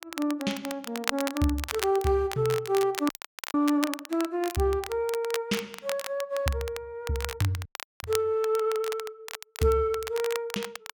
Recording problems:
crackle; vinyl, SNR 9 dB
audio freezing; at 3 s and at 7.5 s

